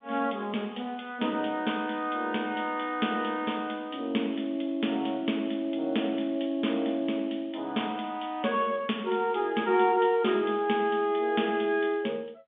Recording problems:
phone line; 150 Hz to 3.6 kHz, G.711

